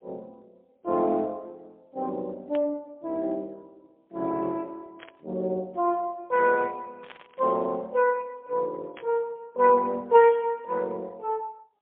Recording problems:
phone line; 260 Hz to 3.7 kHz, AMR-NB, then MP3
burst of static; 4 times, first at 2.5 s; peak -12 dB vs average level

